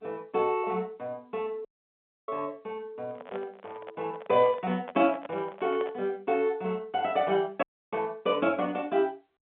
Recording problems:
phone line; 300 Hz to 3.5 kHz, G.711
dropout; at 1.5 s for 0.5 s and at 7.5 s
microphone handling noise; from 3 to 6 s; peak -7 dB vs average level

